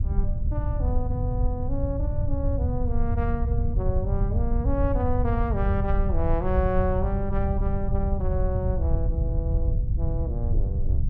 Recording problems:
rumble; below 92 Hz, SNR -4 dB

